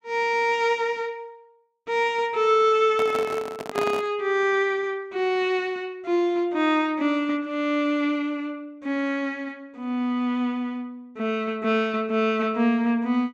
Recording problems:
microphone handling noise; from 3 to 4 s; peak 0 dB vs average level

